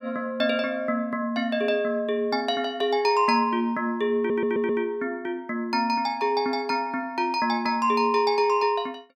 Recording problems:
audio stuttering; at 4 s

